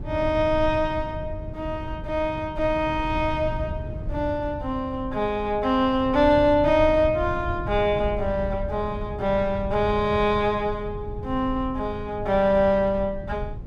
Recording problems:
rumble; below 120 Hz, SNR 11 dB

